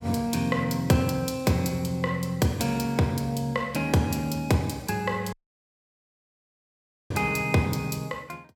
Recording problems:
dropout; at 5.5 s for 2 s

